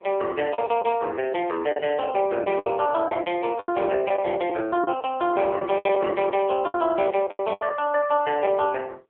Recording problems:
telephone audio; 300 Hz to 3.4 kHz, AMR-NB
lost packets; 9% of the sound replaced, filled with the last packet

